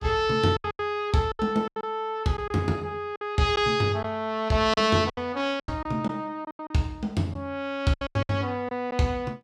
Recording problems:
lost packets; 11% of the sound replaced, filled with silence

